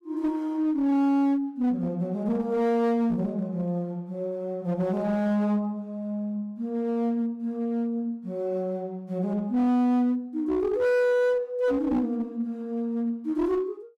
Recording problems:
distortion; hard clipping, uneven, signal-to-distortion ratio 10 dB

